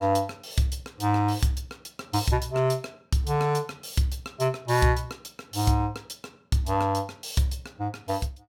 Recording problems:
none

